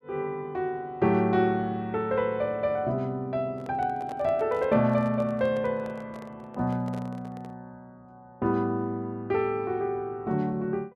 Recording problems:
handling noise; from 3.5 to 7.5 s; peak -12 dB vs average level

